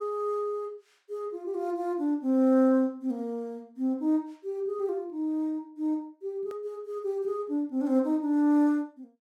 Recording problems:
edit click; at 6.5 s

